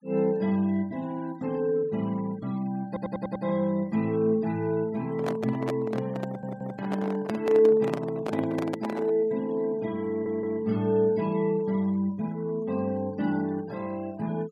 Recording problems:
denoising artefacts; signal-to-artefact ratio 24 dB
stutter; at 3 s, at 6.5 s and at 10 s
microphone handling noise; from 5 to 9.5 s; peak -1 dB vs average level

